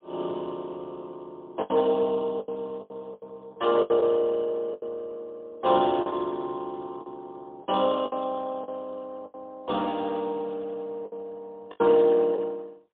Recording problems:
telephone audio; 280 Hz to 3.4 kHz, AMR-NB, then MP3
packet loss; 8% of the sound replaced, filled with the last packet

